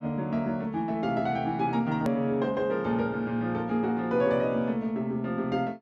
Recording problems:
edit click; at 2 s

